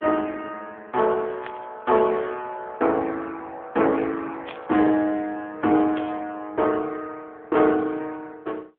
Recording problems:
telephone audio; 240 Hz to 3.4 kHz, AMR-NB
static burst; at 1.5 s, at 4.5 s and at 6 s; peak -10 dB vs average level

